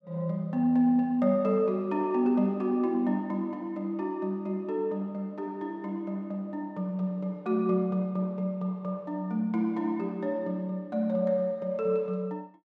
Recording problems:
none

